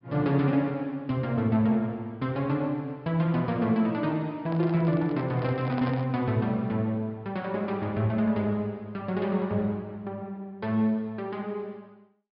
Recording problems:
low-pass filter; nothing above 5.5 kHz
microphone handling noise; from 4.5 to 6 s; peak -5 dB vs average level

